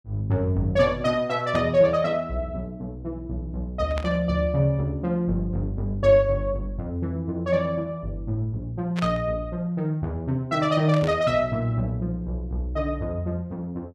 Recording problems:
static burst; 4 times, first at 1.5 s; peak -5 dB vs average level

